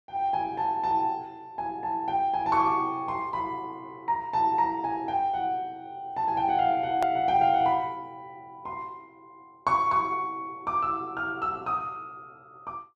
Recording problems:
edit click; at 7 s

